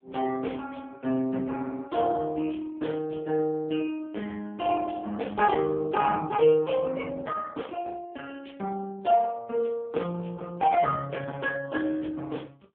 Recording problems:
telephone audio; 220 Hz to 3.1 kHz, AMR-NB

